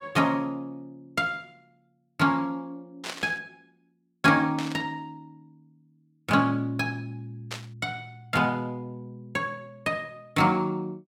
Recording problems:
static burst; at 3 s, at 4.5 s and at 7.5 s; peak -2 dB vs average level

